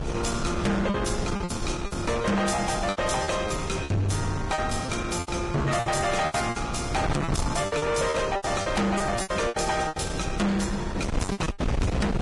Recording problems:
lossy codec; Vorbis, log-spectral distance 4 dB, nothing above 10.4 kHz
distortion; soft clipping, signal-to-distortion ratio 6 dB
wind on the microphone; below 460 Hz, SNR 5 dB
lost packets; 14% of the sound replaced, filled with repeated pitch periods

